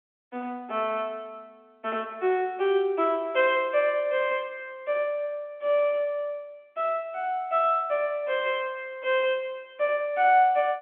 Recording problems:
telephone audio; 280 Hz to 3.6 kHz, G.711

